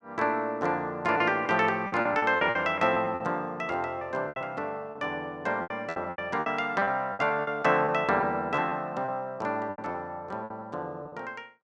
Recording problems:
packet loss; 11% of the sound replaced, filled with repeated pitch periods

